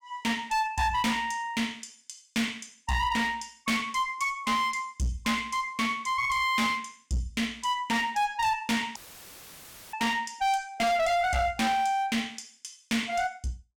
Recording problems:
distortion; hard clipping, uneven, signal-to-distortion ratio 7 dB
dropout; at 9 s for 1 s; filled with static

